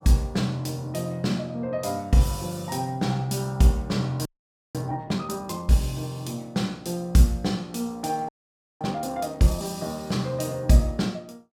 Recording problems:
audio freezing; at 4.5 s for 0.5 s and at 8.5 s for 0.5 s

